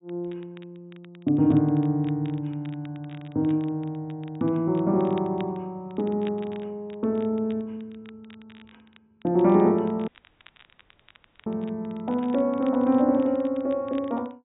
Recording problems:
treble missing; nothing above 4 kHz
crackling; vinyl, SNR 28 dB
dropout; at 10 s for 1.5 s

